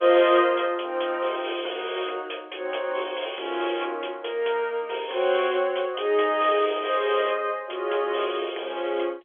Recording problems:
phone line; 320 Hz to 3.4 kHz, G.711

